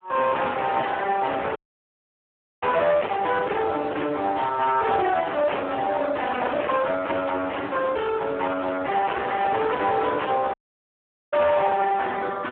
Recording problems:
telephone audio; 320 Hz to 3.2 kHz, Speex
distorted audio; hard clipping, signal-to-distortion ratio 6 dB
audio cutting out; at 1.5 s for 1 s and at 11 s for 1 s

